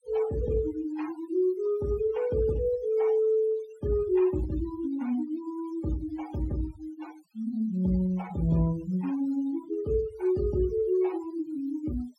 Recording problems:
denoising artefacts; signal-to-artefact ratio 20 dB

